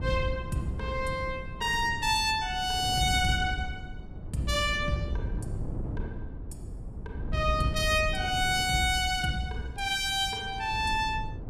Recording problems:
wind noise; below 140 Hz, SNR 10 dB

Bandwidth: 15 kHz